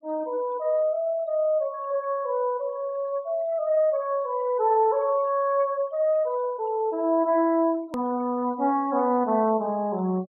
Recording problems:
low-pass filter; nothing above 4.2 kHz
noise reduction artefacts; signal-to-artefact ratio 28 dB
click at an edit; at 8 s

